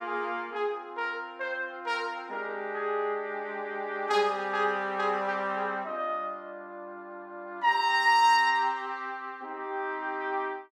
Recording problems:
none

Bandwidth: 15.5 kHz